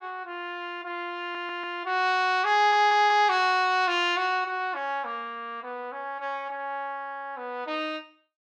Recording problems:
stutter; at 1 s and at 2.5 s

